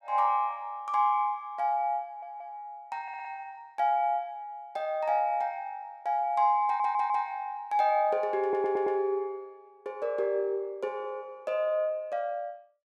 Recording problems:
stutter; 4 times, first at 2 s

